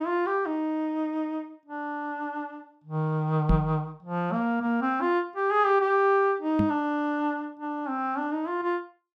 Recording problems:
microphone thump; at 3.5 s and at 6.5 s; peak +6 dB vs average level

